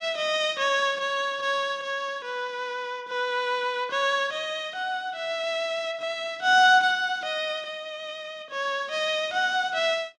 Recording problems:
none

